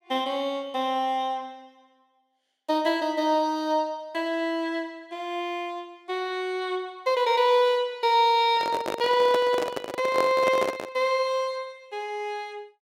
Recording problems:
microphone handling noise; from 8.5 to 11 s; peak +1 dB vs average level

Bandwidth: 16 kHz